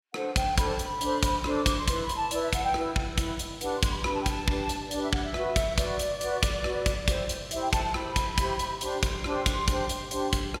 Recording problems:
none

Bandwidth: 16.5 kHz